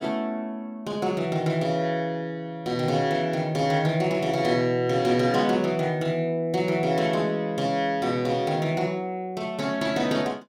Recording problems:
none

